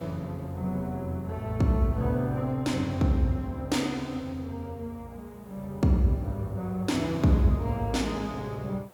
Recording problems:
background hiss; SNR 29 dB

